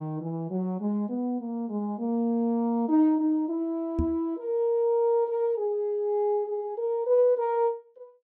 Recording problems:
microphone bump; at 4 s; peak +2 dB vs average level

